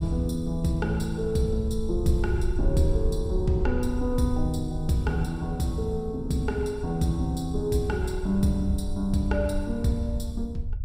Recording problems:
low-frequency rumble; below 72 Hz, SNR 7 dB

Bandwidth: 15.5 kHz